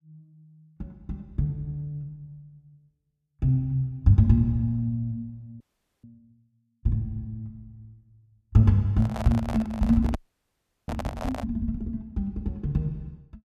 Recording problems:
audio freezing; at 5.5 s and at 10 s for 0.5 s
handling noise; from 9 to 11 s; peak -4 dB vs average level

